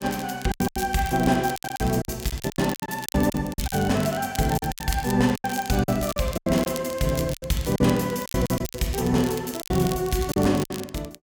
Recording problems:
crackling; vinyl, SNR 13 dB
packet loss; 15% of the sound replaced, filled with silence

